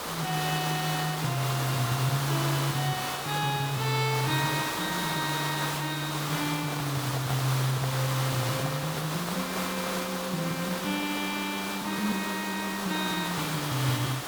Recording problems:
hiss; SNR 2 dB
microphone handling noise; from 6.5 to 10 s; peak -3 dB vs average level

